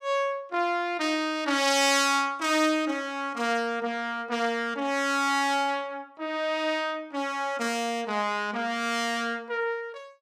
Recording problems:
none

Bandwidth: 15.5 kHz